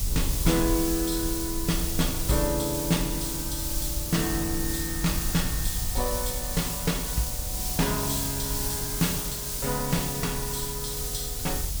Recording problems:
hum; 60 Hz, harmonics up to 1.4 kHz, SNR 23 dB
hiss; SNR 0 dB
low-frequency rumble; below 62 Hz, SNR 6 dB
wind noise; below 290 Hz, SNR 19 dB

